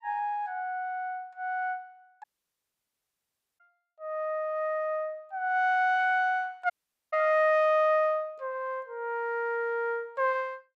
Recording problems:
dropout; at 2 s for 1.5 s and at 6.5 s

